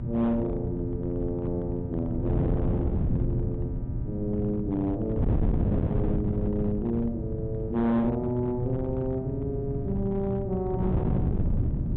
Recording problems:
treble missing; nothing above 4 kHz
distorted audio; hard clipping, signal-to-distortion ratio 11 dB
hum; 60 Hz, harmonics up to 600 Hz, SNR 8 dB
wind noise; below 190 Hz, SNR 1 dB

